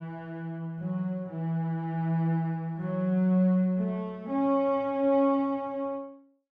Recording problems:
none

